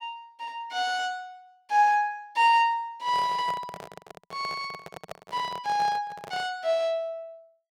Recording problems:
microphone handling noise; from 3 to 6.5 s; peak -8 dB vs average level

